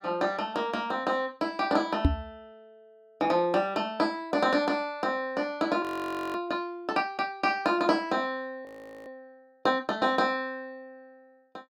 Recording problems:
microphone bump; at 2 s; peak +9 dB vs average level
frozen audio; at 6 s for 0.5 s and at 8.5 s

